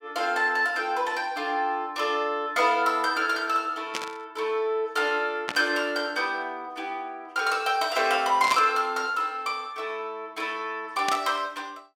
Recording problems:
static burst; 4 times, first at 4 s; peak +1 dB vs average level

